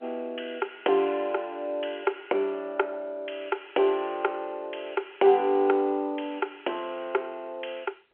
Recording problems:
phone line; 320 Hz to 3.3 kHz, G.711

